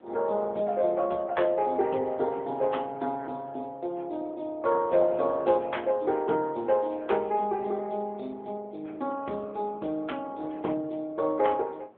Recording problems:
phone line; 220 Hz to 3.5 kHz, AMR-NB
wind on the microphone; below 760 Hz, SNR 23 dB

